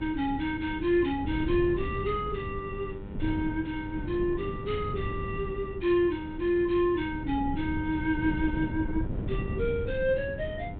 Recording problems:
treble missing; nothing above 4 kHz
hum; 50 Hz, harmonics up to 2.4 kHz, SNR 17 dB
wind noise; below 180 Hz, SNR 7 dB

